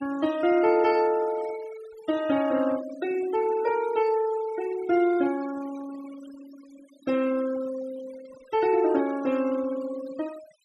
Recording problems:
noise reduction artefacts; signal-to-artefact ratio 17 dB

